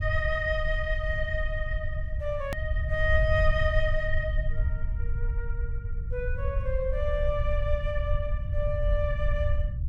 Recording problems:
rumble; below 74 Hz, SNR 0 dB
edit click; at 2.5 s

